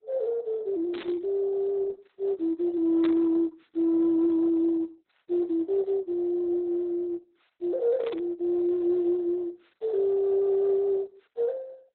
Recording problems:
lossy codec; MP2, then Opus, log-spectral distance 2 dB, nothing above 4.1 kHz
burst of static; at 1 s, at 3 s and at 8 s; peak -8 dB vs average level

